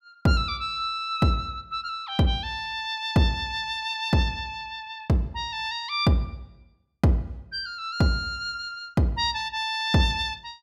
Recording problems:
none

